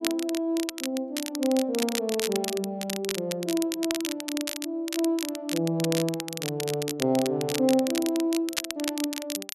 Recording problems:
crackling; vinyl, SNR 6 dB

